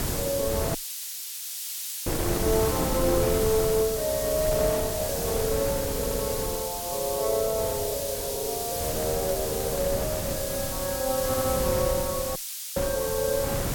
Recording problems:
hiss; slope +6 dB per octave, SNR 3 dB
wind on the microphone; below 540 Hz, SNR 6 dB
audio cutting out; at 1 s for 1.5 s and at 12 s
stutter; at 6 s and at 11 s

